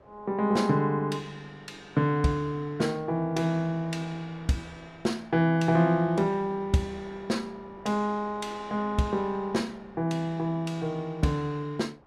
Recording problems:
wind on the microphone; below 880 Hz, SNR 25 dB

